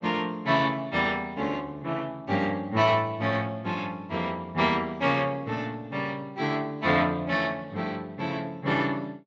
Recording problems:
lossy compression; Speex, log-spectral distance 3 dB

